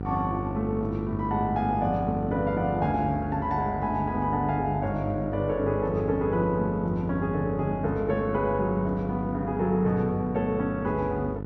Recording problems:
electrical hum; 50 Hz, harmonics up to 1 kHz, SNR 7 dB

